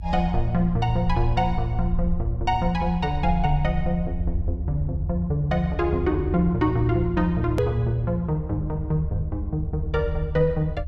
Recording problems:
rumble; below 80 Hz, SNR 6 dB
click at an edit; at 7.5 s

